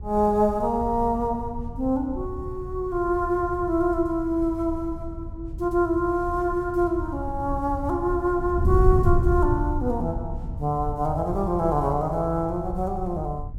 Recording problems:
wind on the microphone; below 100 Hz, SNR 7 dB

